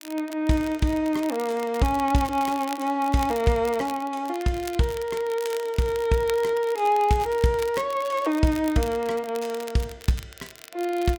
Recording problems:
crackling; vinyl, SNR 17 dB

